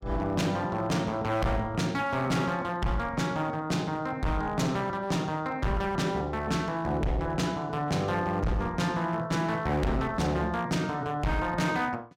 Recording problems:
distorted audio; hard clipping, signal-to-distortion ratio 7 dB

